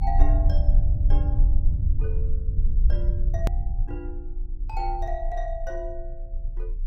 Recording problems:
low-frequency rumble; below 56 Hz, SNR -10 dB
click at an edit; at 3.5 s

